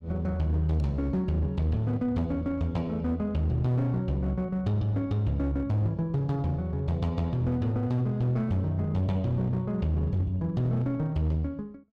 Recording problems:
distorted audio; hard clipping, uneven, signal-to-distortion ratio 11 dB

